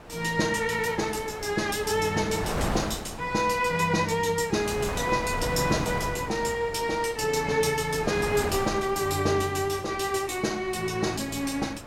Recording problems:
wind noise; below 1 kHz, SNR 10 dB

